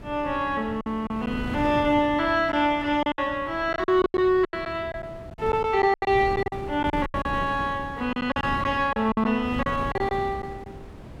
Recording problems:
wind noise; below 380 Hz, SNR 13 dB
packet loss; 11% of the sound replaced, filled with silence

